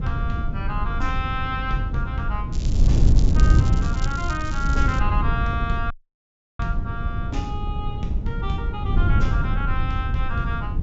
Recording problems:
low-pass filter; nothing above 8 kHz
wind noise; below 96 Hz, SNR -5 dB
crackling; from 2.5 to 5 s; loose cable, SNR 11 dB
audio cutting out; at 6 s for 0.5 s

